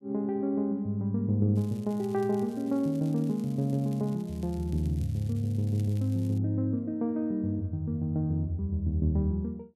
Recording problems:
crackle; from 1.5 to 6.5 s; loose cable, SNR 26 dB

